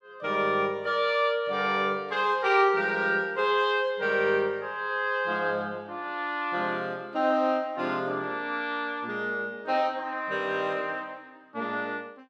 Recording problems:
none

